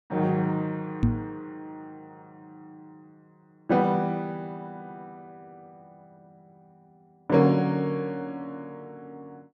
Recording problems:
knock on the microphone; at 1 s; peak +8 dB vs average level

